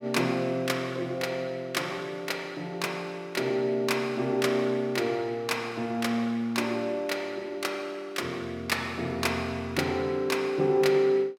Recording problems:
none

